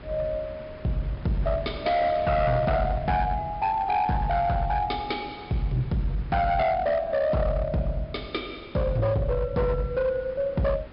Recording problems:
low-pass filter; nothing above 5.5 kHz
distortion; hard clipping, uneven, signal-to-distortion ratio 10 dB
wind noise; below 1.1 kHz, SNR 19 dB

